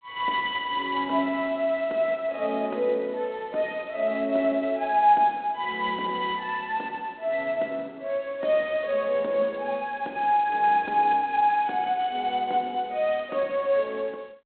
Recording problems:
phone line; 240 Hz to 3.9 kHz, G.726

